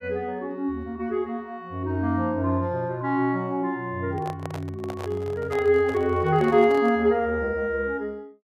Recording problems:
handling noise; from 4 to 7 s; peak -6 dB vs average level

